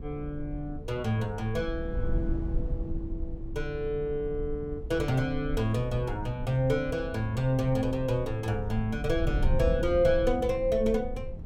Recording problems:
wind on the microphone; below 78 Hz, SNR 7 dB

